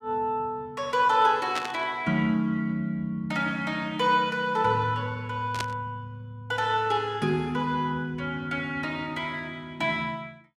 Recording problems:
static burst; at 1.5 s and at 5.5 s; peak -1 dB vs average level

